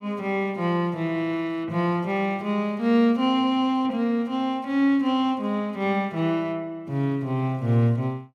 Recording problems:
none

